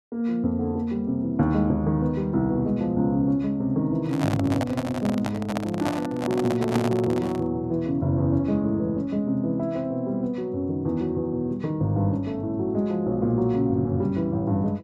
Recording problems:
handling noise; from 4 to 7.5 s; peak +1 dB vs average level

